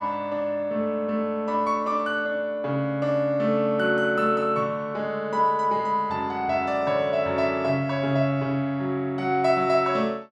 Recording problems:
none

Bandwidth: 13 kHz